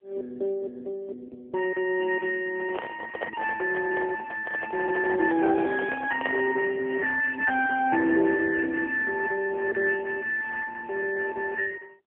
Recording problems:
telephone audio; 950 Hz to 2.3 kHz, AMR-NB
microphone handling noise; from 2.5 to 6.5 s; peak -2 dB vs average level

